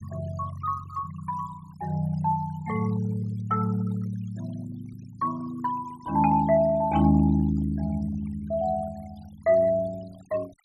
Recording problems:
denoising artefacts; signal-to-artefact ratio 22 dB

